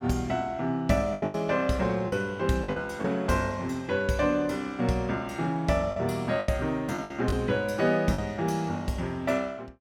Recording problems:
lost packets; 6% of the sound replaced, filled with the last packet

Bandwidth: 18 kHz